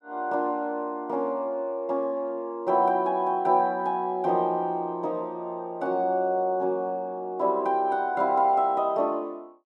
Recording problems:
none

